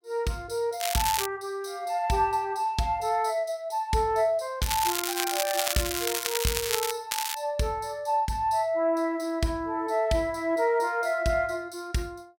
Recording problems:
crackling; at 1 s, from 4.5 to 7 s and at 7 s; loose cable, SNR 1 dB

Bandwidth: 16.5 kHz